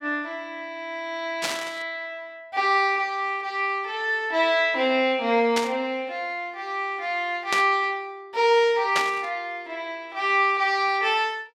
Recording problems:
burst of static; 4 times, first at 1.5 s; peak +3 dB vs average level

